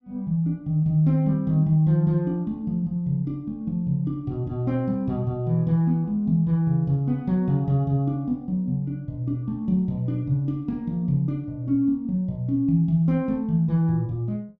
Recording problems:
none

